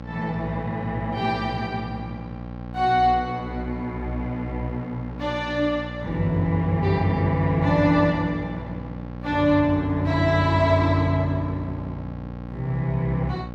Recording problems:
hum; 60 Hz, harmonics up to 1.7 kHz, SNR 11 dB

